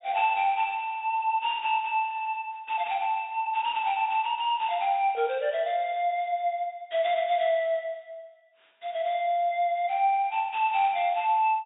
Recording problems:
treble missing; nothing above 4 kHz

